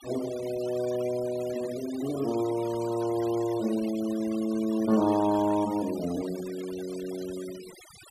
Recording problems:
noise reduction artefacts; signal-to-artefact ratio 16 dB

